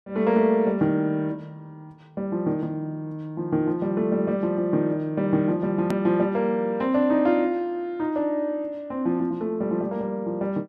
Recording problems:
click at an edit; at 6 s

